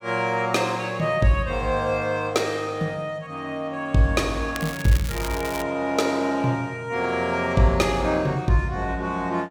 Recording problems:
crackle; from 4.5 to 5.5 s; loose cable, SNR 12 dB

